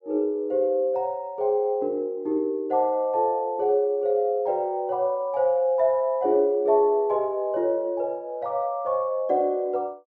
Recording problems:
none

